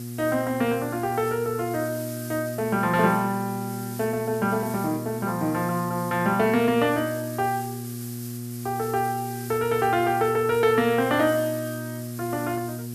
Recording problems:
hum; 60 Hz, harmonics up to 720 Hz, SNR 9 dB
background hiss; SNR 15 dB

